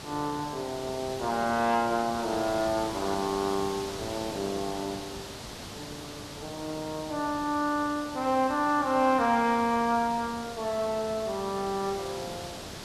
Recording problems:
hiss; slope -3 dB per octave, SNR 11 dB

